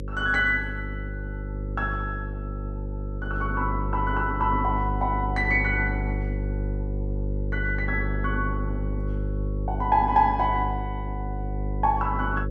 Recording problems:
hum; 50 Hz, harmonics up to 550 Hz, SNR 4 dB

